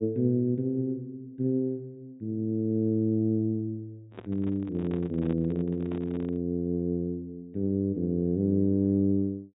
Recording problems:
low-pass filter; nothing above 4 kHz
handling noise; from 4 to 6.5 s; peak -9 dB vs average level

